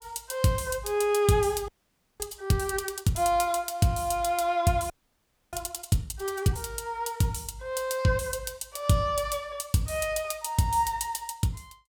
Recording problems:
frozen audio; at 1.5 s for 0.5 s and at 5 s for 0.5 s

